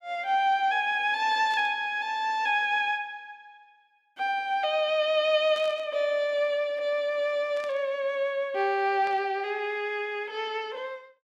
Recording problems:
static burst; 4 times, first at 1.5 s; peak -13 dB vs average level

